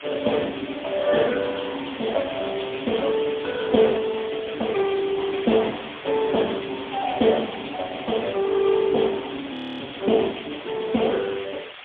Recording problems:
telephone audio; 190 Hz to 3.5 kHz, AMR-NB, then MP3
hiss; SNR 13 dB
frozen audio; at 9.5 s

